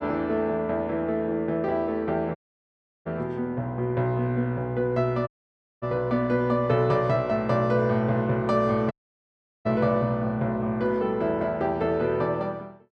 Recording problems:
audio cutting out; at 2.5 s for 0.5 s, at 5.5 s for 0.5 s and at 9 s for 0.5 s

